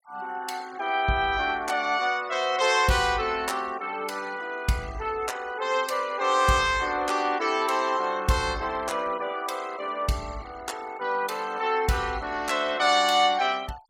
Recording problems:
denoising artefacts; signal-to-artefact ratio 21 dB

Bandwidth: 17.5 kHz